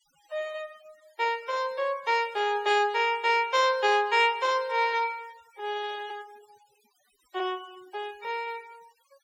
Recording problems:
denoising artefacts; signal-to-artefact ratio 25 dB

